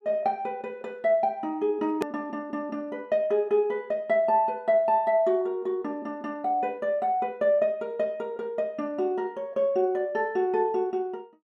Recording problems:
hard cut with a click; at 2 s

